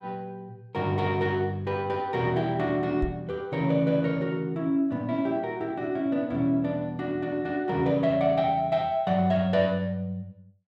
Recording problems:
microphone bump; at 3 s; peak -1 dB vs average level

